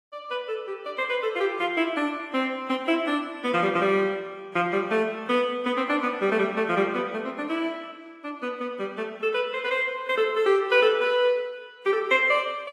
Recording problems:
lossy codec; AAC, log-spectral distance 2 dB, nothing above 13.8 kHz

